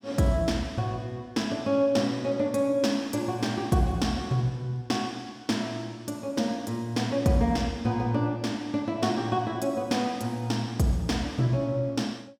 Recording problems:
none

